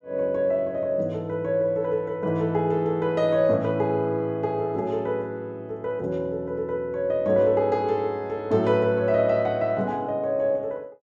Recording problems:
none

